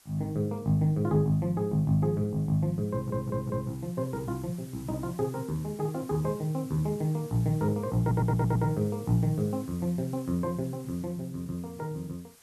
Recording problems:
hiss; slope 0 dB per octave, SNR 23 dB
stutter; at 3 s and at 8 s

